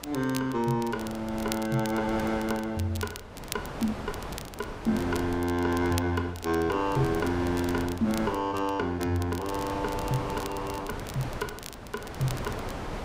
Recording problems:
wind noise; below 1.1 kHz, SNR 10 dB
crackling; vinyl, SNR 14 dB

